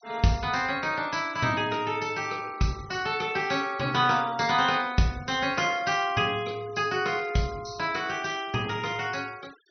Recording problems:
low-pass filter; nothing above 6.1 kHz
noise reduction artefacts; signal-to-artefact ratio 22 dB

